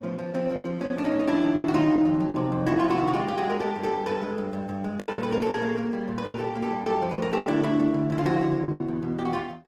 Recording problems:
codec artefacts; Opus, log-spectral distance 3 dB, nothing above 19 kHz
lost packets; 9% of the sound replaced, filled with the last packet

